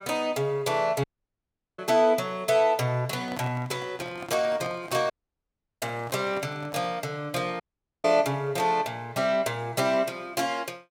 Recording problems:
dropout; at 1 s for 0.5 s, at 5 s for 0.5 s and at 7.5 s
microphone handling noise; from 3 to 7 s; peak -7 dB vs average level

